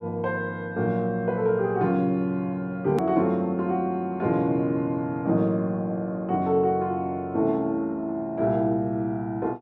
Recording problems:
edit click; at 3 s

